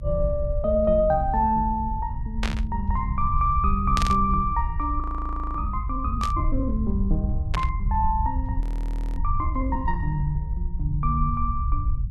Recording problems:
low-frequency rumble; below 70 Hz, SNR 3 dB
static burst; 4 times, first at 2.5 s; peak +1 dB vs average level
frozen audio; at 5 s for 0.5 s and at 8.5 s for 0.5 s

